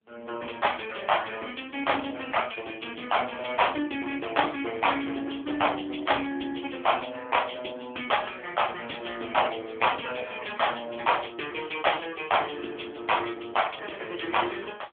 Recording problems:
telephone audio; 300 Hz to 3.4 kHz, AMR-NB

